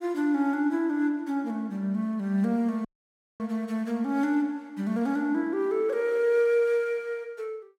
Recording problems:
dropout; at 3 s for 0.5 s

